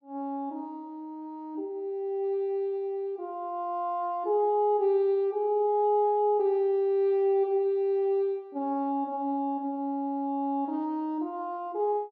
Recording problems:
none

